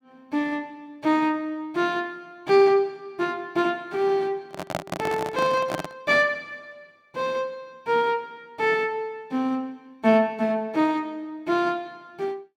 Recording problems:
microphone handling noise; from 4.5 to 6 s; peak +1 dB vs average level

